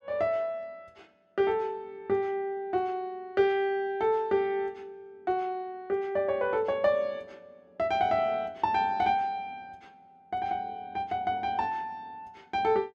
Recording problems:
none

